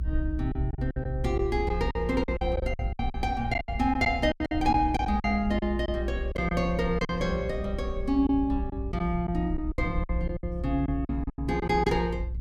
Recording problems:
low-frequency rumble; below 70 Hz, strongest tone 58 Hz, SNR 6 dB
packet loss; 12% of the sound replaced, filled with silence

